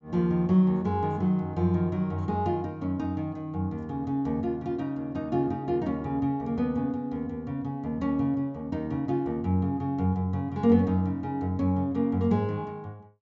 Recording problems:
treble missing; nothing above 7.6 kHz

